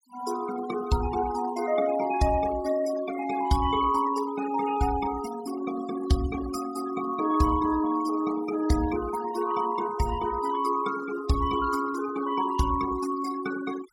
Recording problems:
noise reduction artefacts; signal-to-artefact ratio 13 dB

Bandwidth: 16 kHz